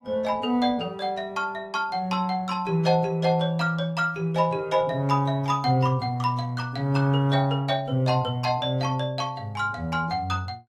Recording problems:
lossy compression; AAC, log-spectral distance 2 dB, nothing above 15.5 kHz

